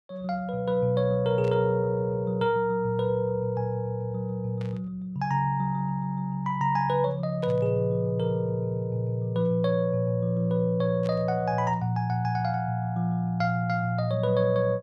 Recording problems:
burst of static; 4 times, first at 1.5 s; peak -14 dB vs average level

